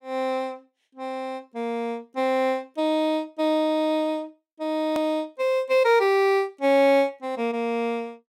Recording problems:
click at an edit; at 5 s

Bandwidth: 16 kHz